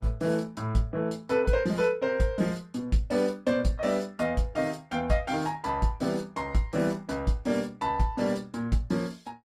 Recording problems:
lossy compression; Opus, log-spectral distance 2 dB, nothing above 17.7 kHz

